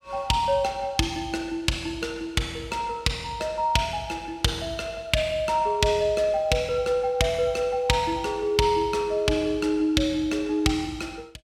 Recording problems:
none

